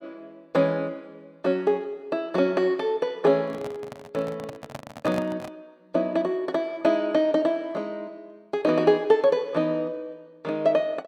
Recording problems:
microphone handling noise; from 3.5 to 5.5 s; peak -5 dB vs average level

